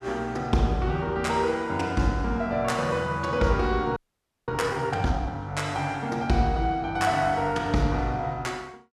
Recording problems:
audio freezing; at 4 s for 0.5 s

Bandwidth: 13.5 kHz